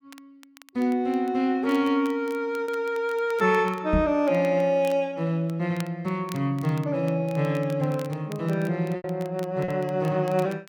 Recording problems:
crackling; vinyl, SNR 24 dB
lost packets; 1.6% of the sound replaced, filled with repeated pitch periods
knock on the microphone; at 4 s; peak +3 dB vs average level

